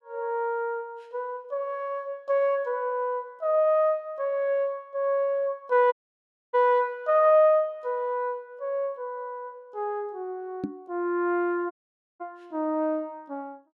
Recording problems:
dropout; at 6 s for 0.5 s and at 12 s
microphone thump; at 11 s; peak 0 dB vs average level

